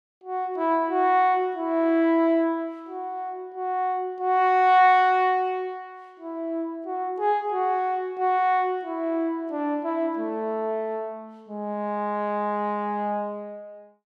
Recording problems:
none

